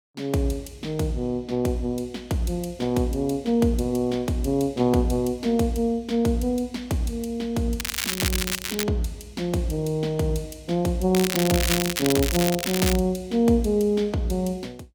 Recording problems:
crackling; from 8 to 9 s and from 11 to 13 s; loose cable, SNR 2 dB

